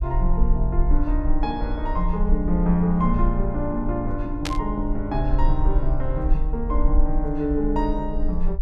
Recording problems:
rumble; below 46 Hz, strongest tone 22 Hz, SNR 1 dB
burst of static; at 4.5 s; peak +2 dB vs average level

